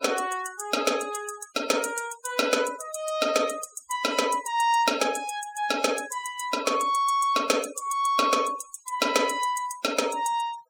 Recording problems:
noise reduction artefacts; signal-to-artefact ratio 16 dB

